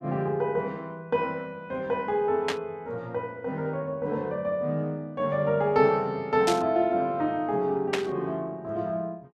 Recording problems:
static burst; at 2.5 s, at 6.5 s and at 8 s; peak +3 dB vs average level

